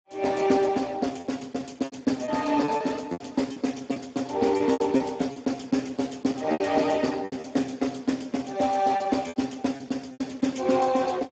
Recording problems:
lossy codec; Speex, log-spectral distance 5 dB, nothing above 7.6 kHz
lost packets; 9% of the sound replaced, filled with repeated pitch periods

